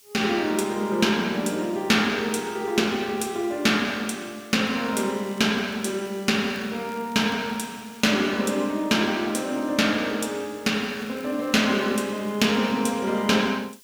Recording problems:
background hiss; SNR 26 dB
crackle; from 4.5 to 8 s and from 11 to 13 s; loose cable, SNR 28 dB

